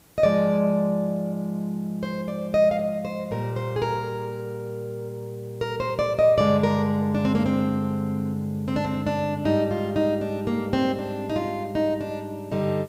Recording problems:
hiss; slope -4 dB per octave, SNR 29 dB

